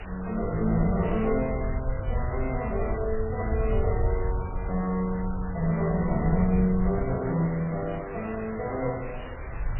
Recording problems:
lossy codec; MP3, log-spectral distance 11 dB, nothing above 3 kHz
hiss; SNR 14 dB
rumble; below 86 Hz, SNR 5 dB

